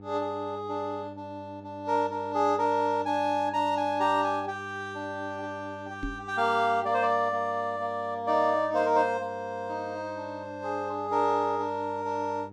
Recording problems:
electrical hum; 50 Hz, harmonics up to 900 Hz, SNR 19 dB
microphone thump; at 6 s; peak -2 dB vs average level

